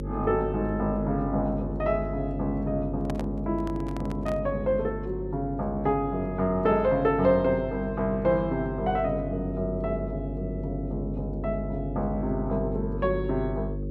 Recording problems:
hum; 50 Hz, harmonics up to 550 Hz, SNR 6 dB
microphone handling noise; from 3 to 4.5 s; peak -5 dB vs average level

